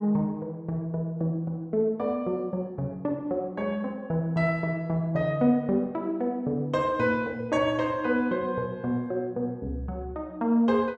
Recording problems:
none

